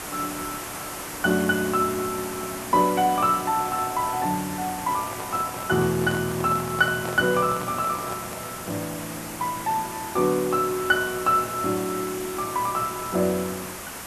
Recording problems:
background hiss; slope -3 dB per octave, SNR 9 dB
handling noise; from 4.5 to 8.5 s; peak -6 dB vs average level

